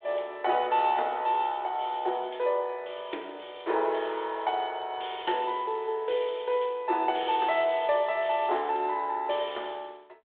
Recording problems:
telephone audio; 300 Hz to 3.6 kHz, G.726

